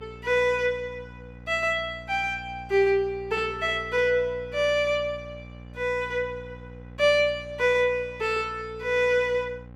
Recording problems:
hum; 60 Hz, harmonics up to 1.1 kHz, SNR 19 dB

